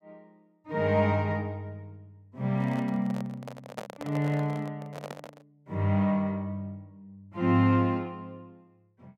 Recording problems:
microphone handling noise; from 2.5 to 5.5 s; peak -4 dB vs average level

